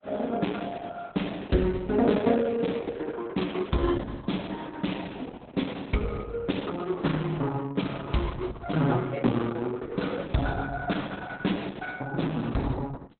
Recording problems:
lossy codec; Opus, log-spectral distance 5 dB, nothing above 4 kHz

